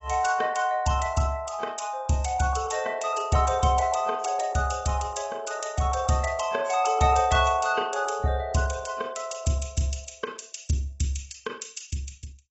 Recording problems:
lossy codec; AAC, log-spectral distance 5 dB, nothing above 7.8 kHz

